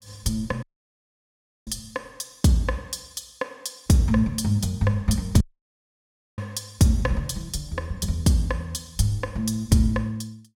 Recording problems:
audio cutting out; at 0.5 s for 1 s and at 5.5 s for 1 s

